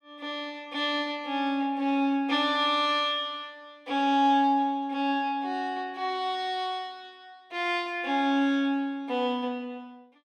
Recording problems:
none

